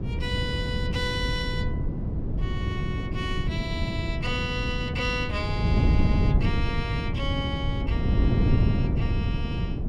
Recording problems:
wind on the microphone; below 180 Hz, SNR -5 dB

